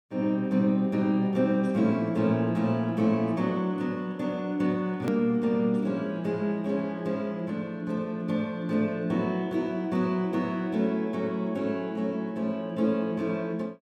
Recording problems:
click at an edit; at 5 s

